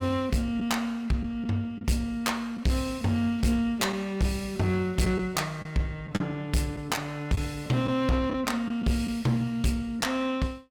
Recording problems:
distorted audio; hard clipping, uneven, signal-to-distortion ratio 11 dB
packet loss; 3% of the sound replaced, filled with the last packet

